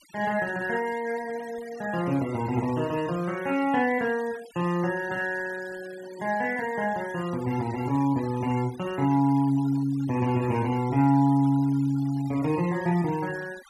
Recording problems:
denoising artefacts; signal-to-artefact ratio 21 dB

